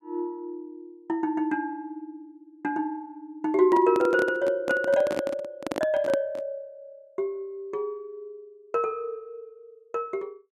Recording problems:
handling noise; from 3.5 to 6.5 s; peak +1 dB vs average level

